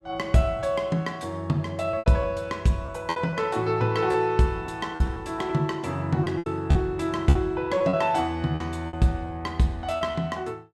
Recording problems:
packet loss; 7% of the sound replaced, filled with repeated pitch periods

